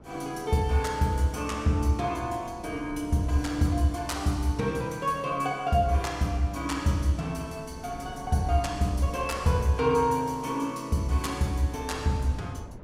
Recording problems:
wind on the microphone; below 310 Hz, SNR 20 dB

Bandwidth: 16 kHz